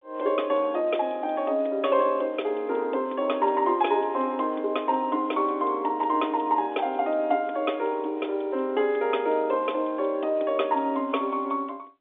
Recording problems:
telephone audio; 240 Hz to 3.6 kHz, G.711

